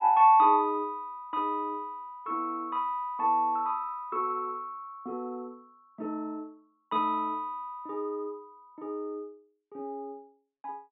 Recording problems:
treble missing; nothing above 4 kHz

